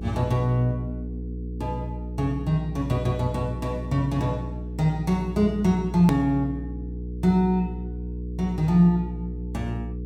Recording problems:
electrical hum; 60 Hz, harmonics up to 480 Hz, SNR 9 dB
edit click; at 6 s

